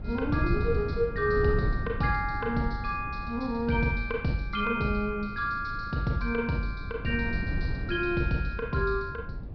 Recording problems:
treble missing; nothing above 5.5 kHz
wind noise; below 150 Hz, SNR 7 dB

